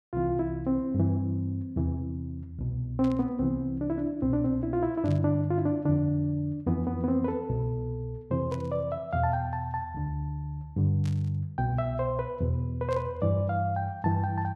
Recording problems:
static burst; 5 times, first at 3 s; peak -13 dB vs average level

